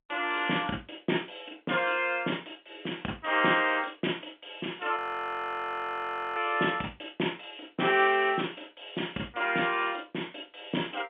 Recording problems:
phone line; 190 Hz to 3.4 kHz, G.711
audio freezing; at 5 s for 1.5 s

